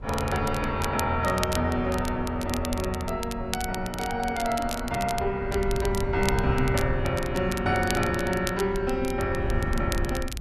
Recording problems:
wind noise; below 100 Hz, SNR 8 dB
crackle; vinyl, SNR 11 dB

